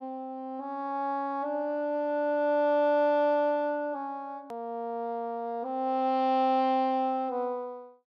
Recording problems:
edit click; at 4.5 s

